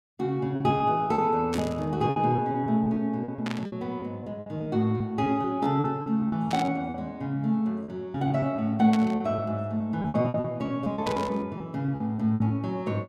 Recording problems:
lost packets; 13% of the sound replaced, filled with repeated pitch periods
static burst; 5 times, first at 1.5 s; peak -4 dB vs average level

